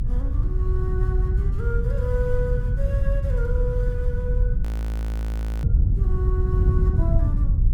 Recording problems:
low-frequency rumble; below 58 Hz, strongest tone 40 Hz, SNR -6 dB
wind noise; below 120 Hz, SNR -7 dB
frozen audio; at 4.5 s for 1 s

